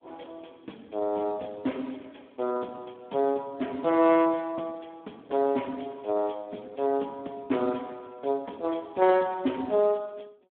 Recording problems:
phone line; 220 Hz to 3.2 kHz, Speex

